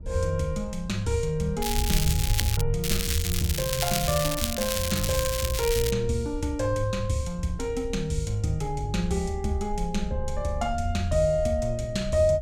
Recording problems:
wind noise; below 66 Hz, SNR 9 dB
crackle; at 1.5 s and from 3 to 6 s; loose cable, SNR 2 dB

